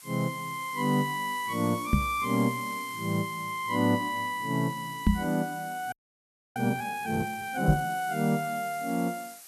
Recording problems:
background hiss; slope +2 dB per octave, SNR 16 dB
microphone bump; at 2 s, at 5 s and at 7.5 s; peak +9 dB vs average level
audio freezing; at 6 s for 0.5 s

